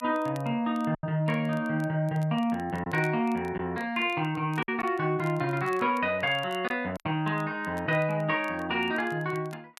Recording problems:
crackle; vinyl, SNR 27 dB
packet loss; 3% of the sound replaced, filled with silence

